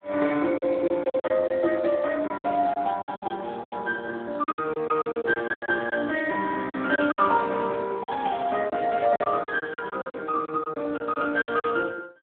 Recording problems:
phone line; 240 Hz to 2.8 kHz, Speex
lost packets; 13% of the sound replaced, filled with silence

